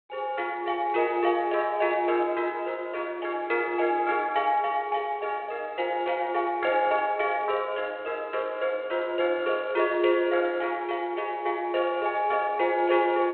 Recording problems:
phone line; 300 Hz to 3.4 kHz, G.726

